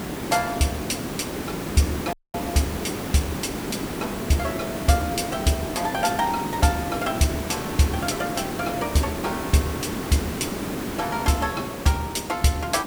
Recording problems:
background hiss; slope -6 dB per octave, SNR 4 dB
audio cutting out; at 2 s

